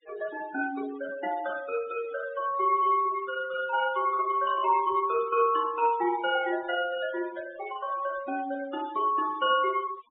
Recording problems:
treble cut off; nothing above 4 kHz
noise reduction artefacts; signal-to-artefact ratio 18 dB

